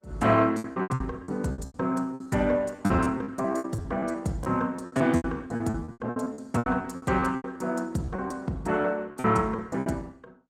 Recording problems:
codec artefacts; Opus, log-spectral distance 3 dB
lost packets; 20% of the sound replaced, filled with repeated pitch periods

